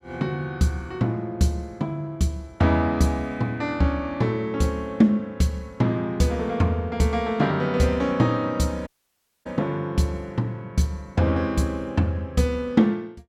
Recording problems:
dropout; at 9 s for 0.5 s

